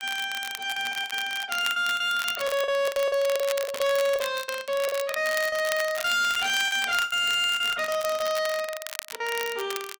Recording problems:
distortion; hard clipping, signal-to-distortion ratio 11 dB
crackle; vinyl, SNR 11 dB
lost packets; 16% of the sound replaced, filled with the last packet

